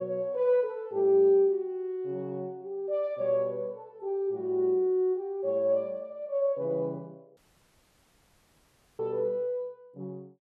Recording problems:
audio cutting out; at 7.5 s for 1.5 s

